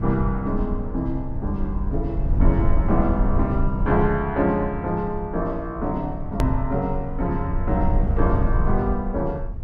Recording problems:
rumble; below 76 Hz, SNR 2 dB
click at an edit; at 6.5 s

